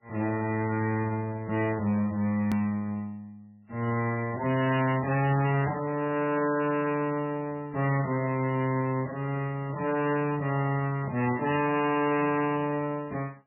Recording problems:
lossy compression; MP3, log-spectral distance 3 dB, nothing above 2.5 kHz
distorted audio; hard clipping, signal-to-distortion ratio 10 dB
click at an edit; at 2.5 s

